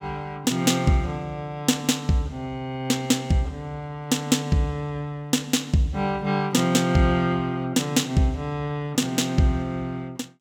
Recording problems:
none

